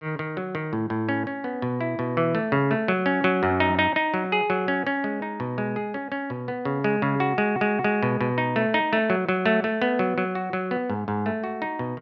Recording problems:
stutter; at 7.5 s

